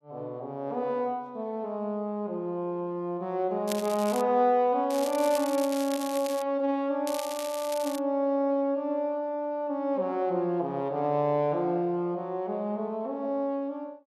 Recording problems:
crackle; at 3.5 s, from 5 to 6.5 s and at 7 s; loose cable, SNR 12 dB

